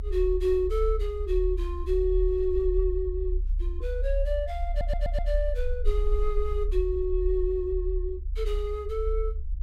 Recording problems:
low-frequency rumble; below 48 Hz, strongest tone 36 Hz, SNR 2 dB
audio stuttering; at 4.5 s

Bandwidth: 16 kHz